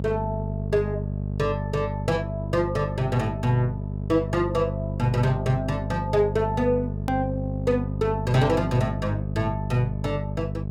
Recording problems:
hum; 50 Hz, harmonics up to 650 Hz, SNR 4 dB
hard cut with a click; at 7 s

